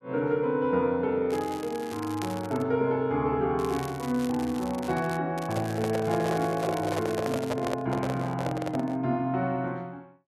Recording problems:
crackling; from 1.5 to 2.5 s, from 3.5 to 5 s and from 5.5 to 7.5 s; loose cable, SNR 17 dB
microphone handling noise; from 5.5 to 9 s; peak +2 dB vs average level

